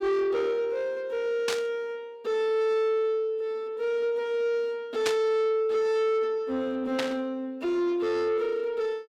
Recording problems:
distorted audio; soft clipping, signal-to-distortion ratio 12 dB
static burst; at 1.5 s, at 5 s and at 7 s; peak +2 dB vs average level

